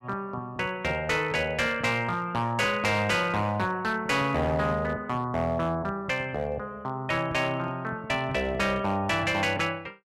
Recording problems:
distorted audio; hard clipping, signal-to-distortion ratio 10 dB

